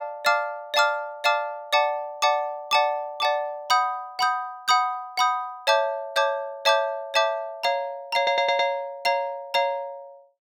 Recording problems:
audio stuttering; at 8 s

